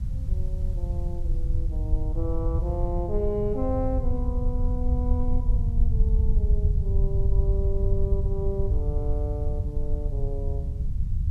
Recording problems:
background hiss; slope -4 dB per octave, SNR 29 dB
rumble; below 76 Hz, SNR -6 dB

